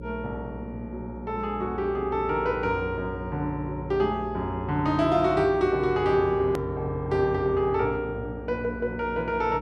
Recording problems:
mains hum; 60 Hz, harmonics up to 540 Hz, SNR 12 dB
hard cut with a click; at 6.5 s

